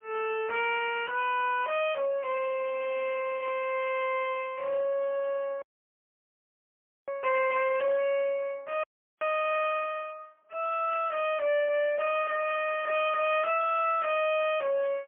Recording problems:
telephone audio; 220 Hz to 2.2 kHz, AMR-NB, then MP3
distortion; soft clipping, signal-to-distortion ratio 10 dB
burst of static; at 3.5 s and at 11 s; peak -14 dB vs average level
audio cutting out; at 5.5 s for 1.5 s and at 9 s

